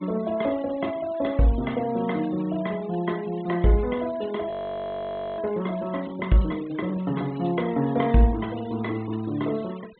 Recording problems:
low-pass filter; nothing above 4 kHz
noise reduction artefacts; signal-to-artefact ratio 21 dB
audio freezing; at 4.5 s for 1 s

